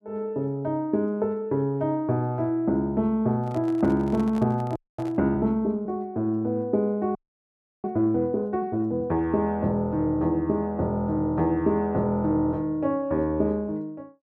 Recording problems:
handling noise; from 3.5 to 5 s; peak -11 dB vs average level
frozen audio; at 5 s and at 7 s for 0.5 s

